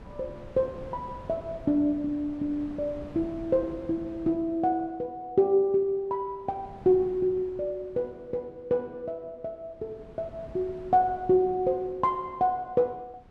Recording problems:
wind on the microphone; below 410 Hz, SNR 19 dB

